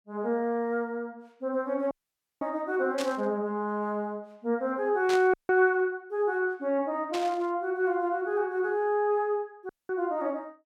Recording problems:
dropout; at 2 s for 0.5 s, at 5.5 s and at 9.5 s
static burst; at 3 s, at 5 s and at 7 s; peak -3 dB vs average level

